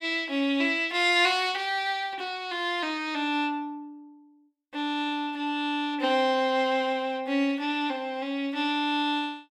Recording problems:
none

